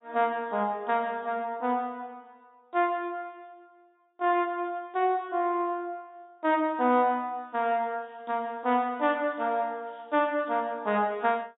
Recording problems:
treble cut off; nothing above 4 kHz

